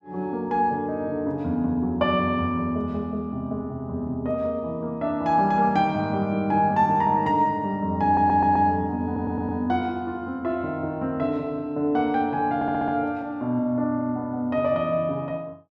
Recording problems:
audio stuttering; at 8 s, at 9 s and at 13 s

